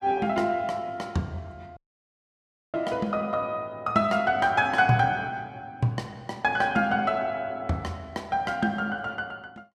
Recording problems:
audio cutting out; at 2 s for 1 s

